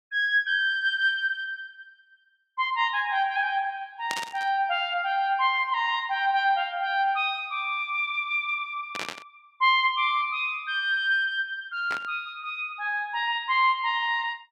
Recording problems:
burst of static; at 4 s, at 9 s and at 12 s; peak -2 dB vs average level

